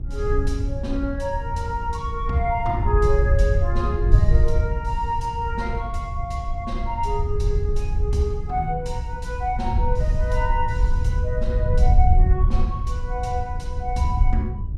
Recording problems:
hum; 60 Hz, harmonics up to 480 Hz, SNR 17 dB
wind on the microphone; below 78 Hz, SNR -3 dB

